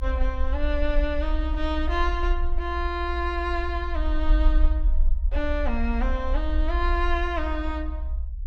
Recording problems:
low-frequency rumble; below 60 Hz, SNR -1 dB

